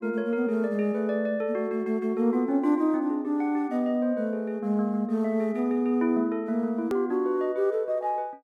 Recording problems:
edit click; at 7 s

